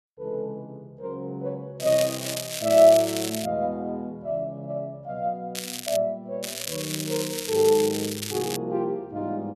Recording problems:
crackling; from 2 to 3.5 s, at 5.5 s and from 6.5 to 8.5 s; loose cable, SNR 7 dB

